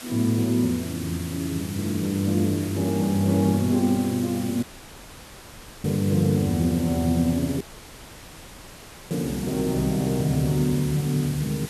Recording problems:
background hiss; slope 0 dB per octave, SNR 14 dB
dropout; at 4.5 s for 1 s and at 7.5 s for 1.5 s

